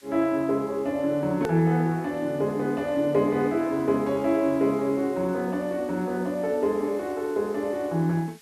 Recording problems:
hiss; SNR 26 dB
edit click; at 1.5 s

